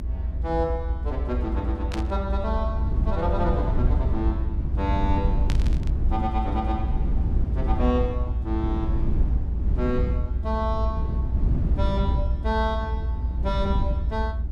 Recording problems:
rumble; below 80 Hz, SNR -4 dB
static burst; at 2 s and at 5.5 s; peak 0 dB vs average level

